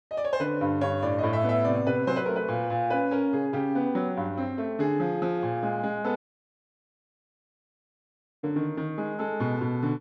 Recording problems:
audio cutting out; at 6 s for 2.5 s

